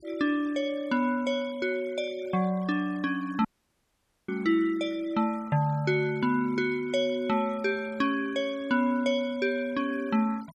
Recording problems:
denoising artefacts; signal-to-artefact ratio 24 dB
dropout; at 3.5 s for 1 s

